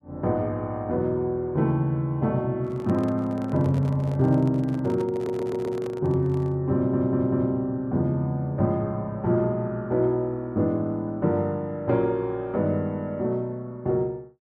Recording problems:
handling noise; from 2.5 to 6.5 s; peak -9 dB vs average level
stutter; at 5 s and at 6.5 s

